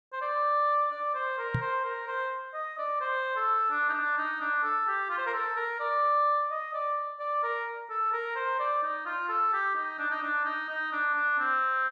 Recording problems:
knock on the microphone; at 1.5 s; peak +2 dB vs average level

